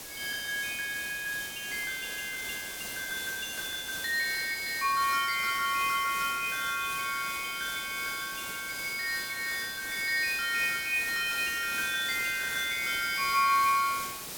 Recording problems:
hiss; slope -1 dB per octave, SNR 8 dB

